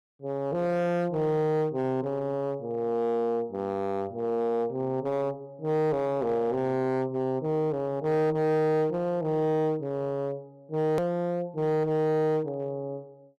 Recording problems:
distorted audio; hard clipping, uneven, signal-to-distortion ratio 10 dB
hard cut with a click; at 11 s

